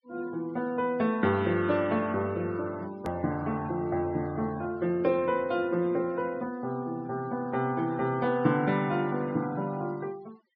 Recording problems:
low-pass filter; nothing above 5.5 kHz
denoising artefacts; signal-to-artefact ratio 24 dB
click at an edit; at 3 s

